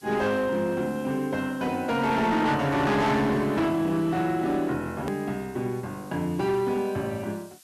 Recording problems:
distortion; hard clipping, signal-to-distortion ratio 10 dB
hiss; slope +3 dB per octave, SNR 26 dB
click at an edit; at 5 s

